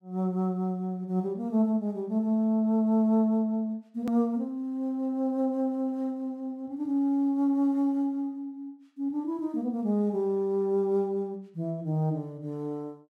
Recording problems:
edit click; at 4 s

